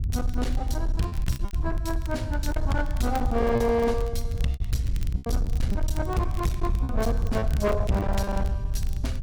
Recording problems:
distorted audio; hard clipping, signal-to-distortion ratio 11 dB
rumble; below 84 Hz, SNR 1 dB
crackle; vinyl, SNR 21 dB
packet loss; 7% of the sound replaced, filled with repeated pitch periods

